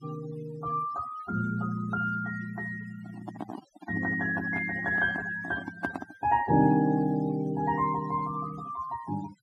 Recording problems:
denoising artefacts; signal-to-artefact ratio 17 dB
handling noise; from 3 to 6.5 s; peak 0 dB vs average level

